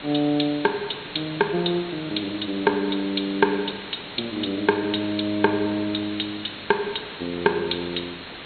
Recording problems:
treble cut off; nothing above 4.3 kHz
hiss; SNR 11 dB

